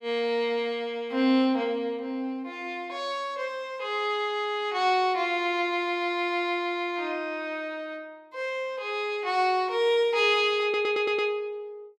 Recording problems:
audio stuttering; at 11 s

